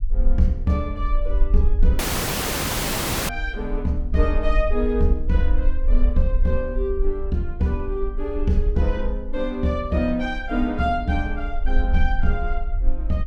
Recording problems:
low-frequency rumble; below 44 Hz, strongest tone 18 Hz, SNR 2 dB
dropout; at 2 s for 1.5 s

